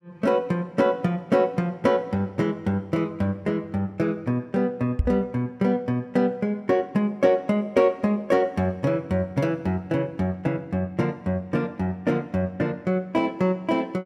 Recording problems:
microphone bump; at 5 s; peak +5 dB vs average level

